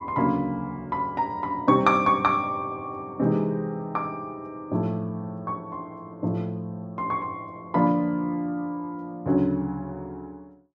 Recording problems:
none

